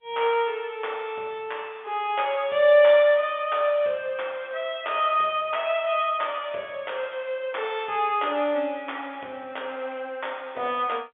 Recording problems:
telephone audio; 320 Hz to 3.5 kHz, G.711

